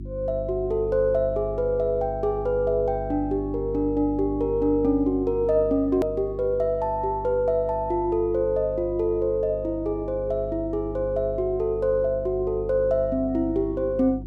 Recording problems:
hum; 50 Hz, harmonics up to 350 Hz, SNR 12 dB
click at an edit; at 6 s

